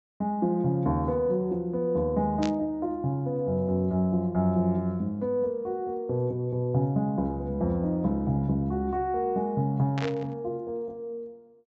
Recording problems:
treble missing; nothing above 8 kHz
burst of static; at 2.5 s and at 10 s; peak -4 dB vs average level

